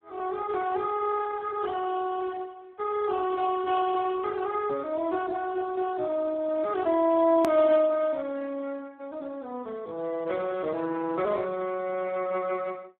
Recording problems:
phone line; 240 Hz to 2 kHz, Speex
hard cut with a click; at 7.5 s

